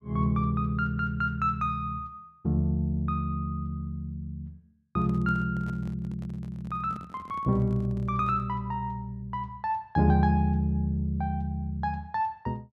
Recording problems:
handling noise; from 5 to 8.5 s; peak -9 dB vs average level

